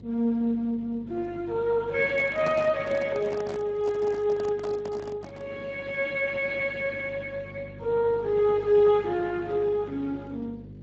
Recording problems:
codec artefacts; Speex, log-spectral distance 3 dB
hum; 50 Hz, harmonics up to 550 Hz, SNR 18 dB
handling noise; from 2 to 5.5 s; peak -4 dB vs average level

